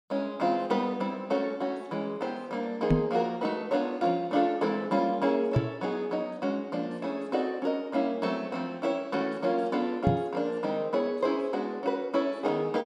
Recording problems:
microphone bump; at 3 s, at 5.5 s and at 10 s; peak +8 dB vs average level

